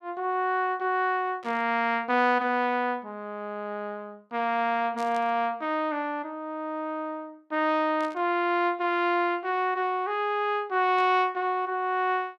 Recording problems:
burst of static; 4 times, first at 1.5 s; peak -13 dB vs average level

